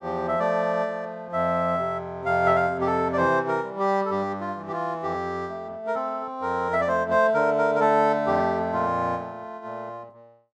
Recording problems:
none

